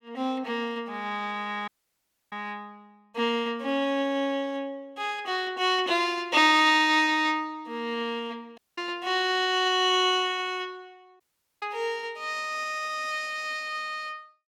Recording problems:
audio cutting out; at 1.5 s for 0.5 s, at 8.5 s and at 11 s

